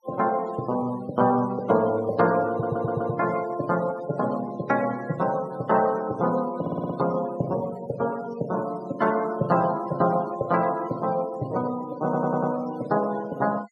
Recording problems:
noise reduction artefacts; signal-to-artefact ratio 18 dB
audio stuttering; at 2.5 s, at 6.5 s and at 12 s

